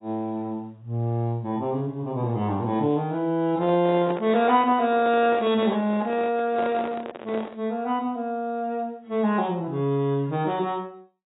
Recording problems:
lossy compression; AAC, log-spectral distance 2 dB, nothing above 3.6 kHz
microphone handling noise; from 3.5 to 7.5 s; peak -5 dB vs average level

